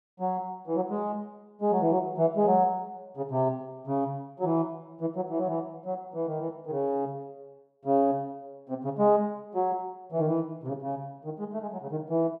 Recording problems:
none

